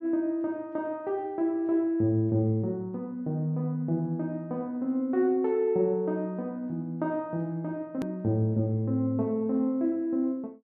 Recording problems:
click at an edit; at 8 s

